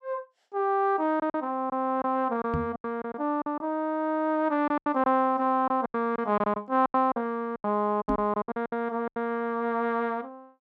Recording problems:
lost packets; 11% of the sound replaced, filled with silence
knock on the microphone; at 2.5 s and at 8 s; peak +1 dB vs average level

